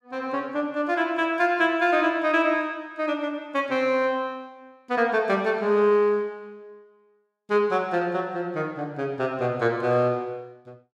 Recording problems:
none

